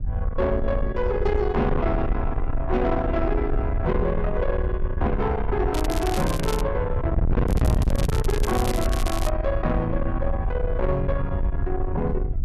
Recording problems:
distortion; soft clipping, signal-to-distortion ratio 8 dB
low-frequency rumble; below 74 Hz, SNR 3 dB
wind on the microphone; below 120 Hz, SNR 4 dB
crackle; at 5.5 s and from 7.5 to 9.5 s; loose cable, SNR 9 dB

